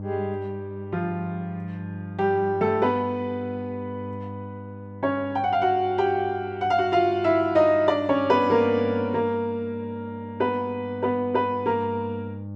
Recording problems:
electrical hum; 50 Hz, harmonics up to 600 Hz, SNR 14 dB

